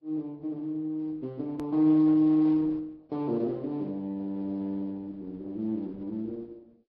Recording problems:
lossy codec; Opus, then Vorbis, log-spectral distance 2 dB, nothing above 13.1 kHz
click at an edit; at 1.5 s

